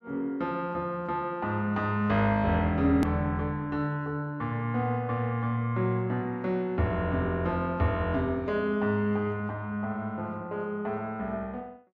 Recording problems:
hard cut with a click; at 3 s

